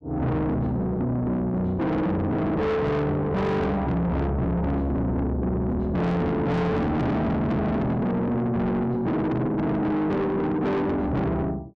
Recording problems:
distortion; soft clipping, signal-to-distortion ratio 6 dB

